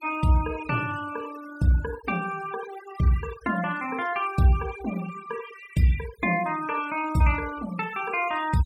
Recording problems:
denoising artefacts; signal-to-artefact ratio 17 dB

